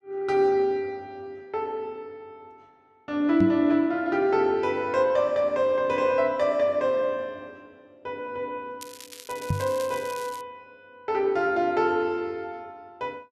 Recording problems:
knock on the microphone; at 3.5 s and at 9.5 s; peak +3 dB vs average level
crackle; from 9 to 10 s; loose cable, SNR 17 dB

